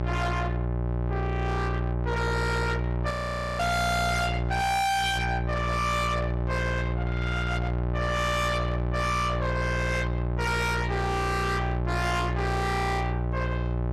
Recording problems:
distortion; soft clipping, signal-to-distortion ratio 4 dB
hum; 60 Hz, harmonics up to 3.5 kHz, SNR 1 dB
frozen audio; at 3 s

